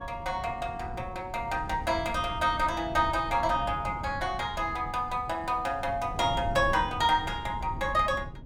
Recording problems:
wind noise; below 170 Hz, SNR 12 dB

